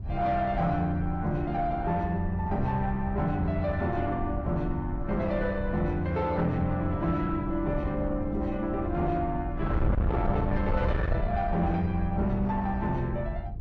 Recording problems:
lossy codec; Vorbis, then MP3, log-spectral distance 2 dB, nothing above 8.7 kHz
distorted audio; soft clipping, signal-to-distortion ratio 7 dB
wind on the microphone; below 110 Hz, SNR 5 dB

